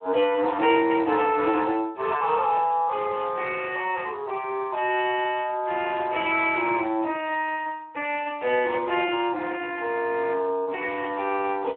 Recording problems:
phone line; 240 Hz to 3.1 kHz, Speex

